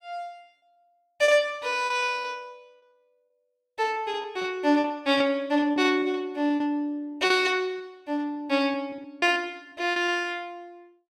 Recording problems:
lost packets; 9% of the sound replaced, filled with repeated pitch periods

